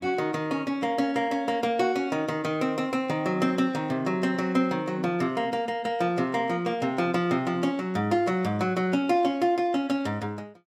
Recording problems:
none

